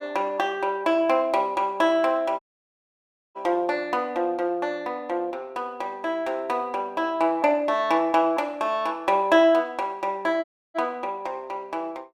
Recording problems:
audio cutting out; at 2.5 s for 1 s and at 10 s

